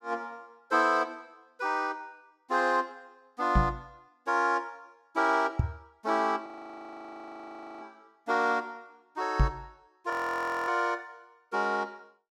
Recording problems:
microphone thump; at 3.5 s, at 5.5 s and at 9.5 s; peak +8 dB vs average level
audio freezing; at 6.5 s for 1.5 s and at 10 s for 0.5 s

